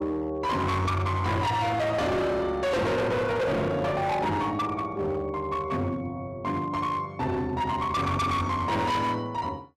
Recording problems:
distortion; hard clipping, signal-to-distortion ratio 6 dB

